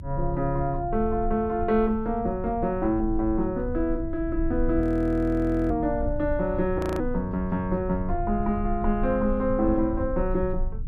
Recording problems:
low-frequency rumble; below 78 Hz, strongest tone 24 Hz, SNR 8 dB
audio freezing; at 5 s for 1 s and at 7 s

